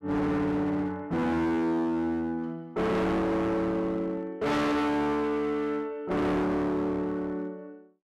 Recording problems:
distorted audio; hard clipping, uneven, signal-to-distortion ratio 5 dB

